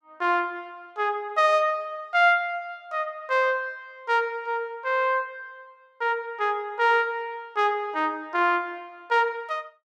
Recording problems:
none

